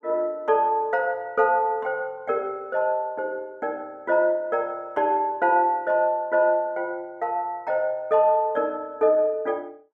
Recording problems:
none

